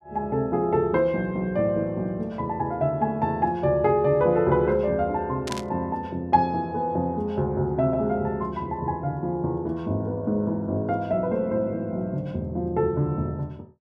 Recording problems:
static burst; at 5.5 s; peak -3 dB vs average level

